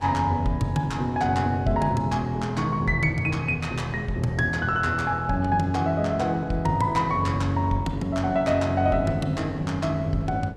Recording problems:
wind noise; below 460 Hz, SNR 21 dB

